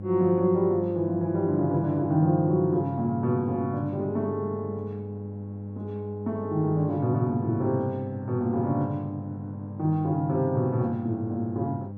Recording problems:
hum; 50 Hz, harmonics up to 800 Hz, SNR 10 dB

